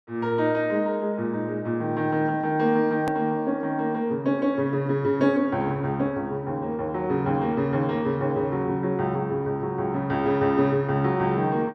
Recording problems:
hard cut with a click; at 3 s

